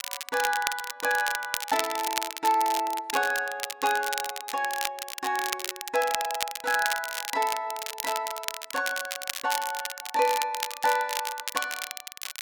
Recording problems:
crackling; vinyl, SNR 5 dB

